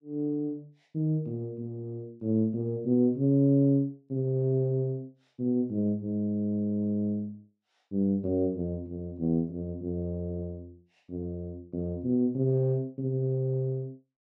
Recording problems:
none

